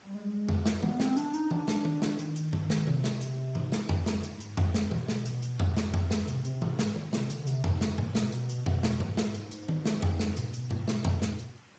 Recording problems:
codec artefacts; Speex, log-spectral distance 4 dB, nothing above 7.6 kHz
hiss; slope -3 dB per octave, SNR 24 dB

